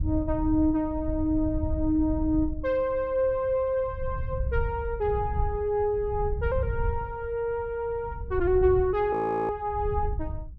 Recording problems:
wind noise; below 88 Hz, SNR 7 dB
frozen audio; at 9 s

